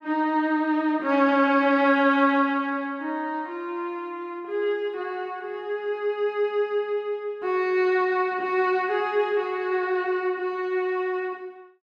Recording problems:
none

